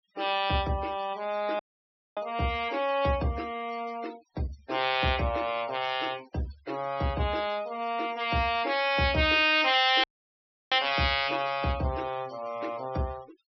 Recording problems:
treble cut off; nothing above 5.8 kHz
noise reduction artefacts; signal-to-artefact ratio 21 dB
dropout; at 1.5 s for 0.5 s and at 10 s for 0.5 s

